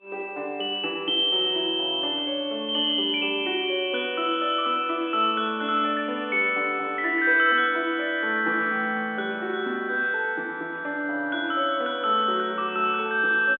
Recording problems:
telephone audio; 240 Hz to 3.5 kHz, G.711

